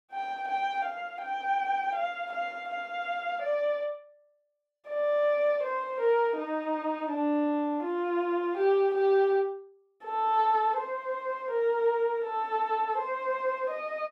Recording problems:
none

